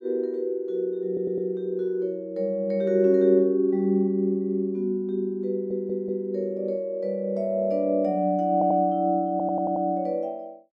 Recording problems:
stutter; 4 times, first at 1 s

